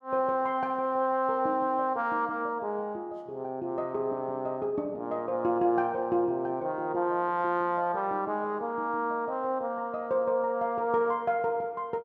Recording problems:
none

